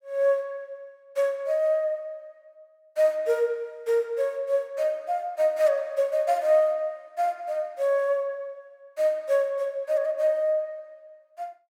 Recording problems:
none

